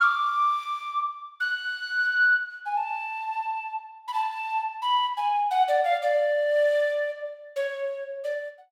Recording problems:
none

